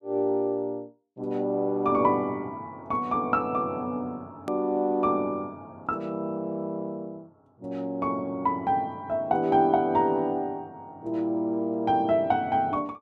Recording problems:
click at an edit; at 4.5 s

